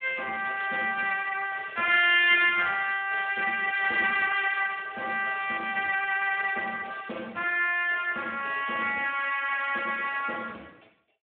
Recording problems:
phone line; 280 Hz to 3.4 kHz, Speex

